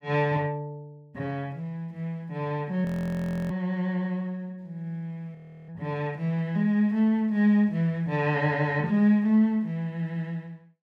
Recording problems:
audio freezing; at 3 s for 0.5 s and at 5.5 s

